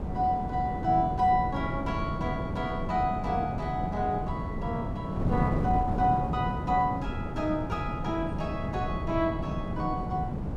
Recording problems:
wind on the microphone; below 280 Hz, SNR 3 dB

